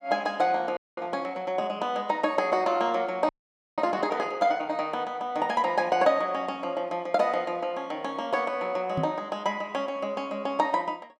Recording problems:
frozen audio; at 1 s and at 3.5 s
microphone thump; at 9 s; peak +1 dB vs average level

